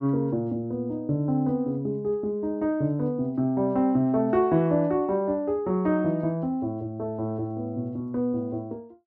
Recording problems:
none

